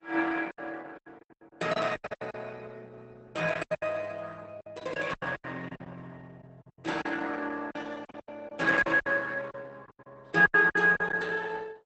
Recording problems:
codec artefacts; Opus, log-spectral distance 4 dB, nothing above 8.2 kHz
packet loss; 15% of the sound replaced, filled with silence

